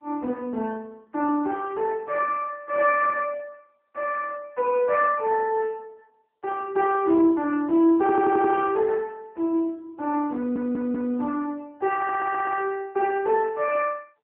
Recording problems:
phone line; 220 Hz to 3.1 kHz, AMR-NB
stutter; at 8 s, at 10 s and at 12 s

